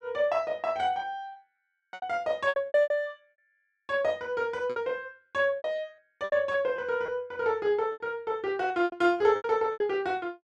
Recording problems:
lost packets; 12% of the sound replaced, filled with repeated pitch periods

